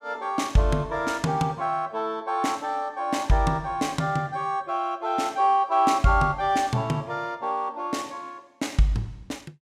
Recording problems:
none

